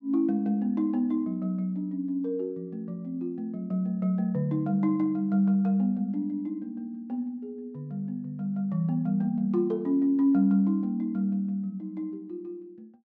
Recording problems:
none

